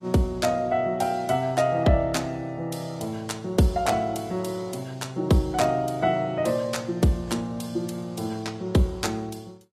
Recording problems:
lossy codec; AAC, log-spectral distance 2 dB

